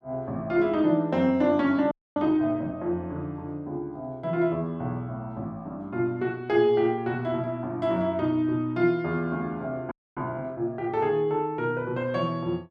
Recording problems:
audio freezing; at 2 s and at 10 s

